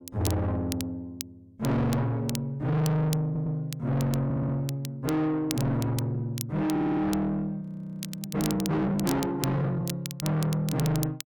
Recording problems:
distortion; soft clipping, signal-to-distortion ratio 6 dB
crackle; vinyl, SNR 12 dB
stutter; at 3.5 s, at 4 s and at 6.5 s
audio freezing; at 7.5 s for 0.5 s

